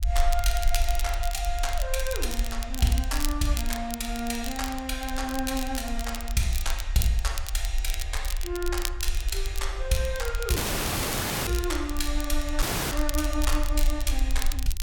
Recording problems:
rumble; below 48 Hz, strongest tone 22 Hz, SNR 2 dB
crackle; vinyl, SNR 7 dB
audio cutting out; at 11 s for 1 s and at 13 s

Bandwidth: 17 kHz